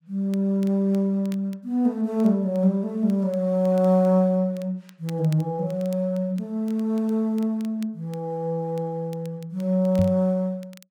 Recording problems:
crackle; vinyl, SNR 29 dB
microphone bump; at 10 s; peak +2 dB vs average level

